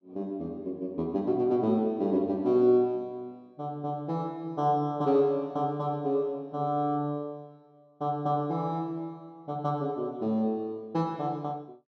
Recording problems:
none

